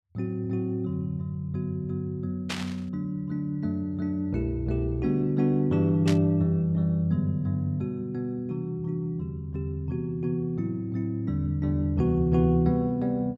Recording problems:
burst of static; at 2.5 s and at 6 s; peak 0 dB vs average level

